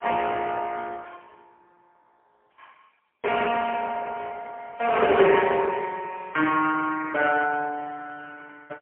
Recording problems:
telephone audio; 300 Hz to 3.2 kHz, AMR-NB, then MP3

